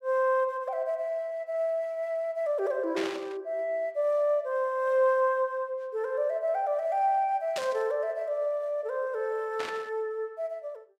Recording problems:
burst of static; at 3 s, at 7.5 s and at 9.5 s; peak -3 dB vs average level

